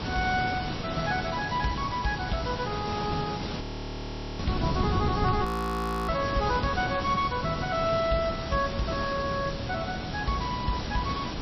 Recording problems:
codec artefacts; MP3, log-spectral distance 11 dB, nothing above 15.1 kHz
hiss; slope -4 dB per octave, SNR 5 dB
wind on the microphone; below 210 Hz, SNR 8 dB
frozen audio; at 3.5 s for 1 s and at 5.5 s for 0.5 s

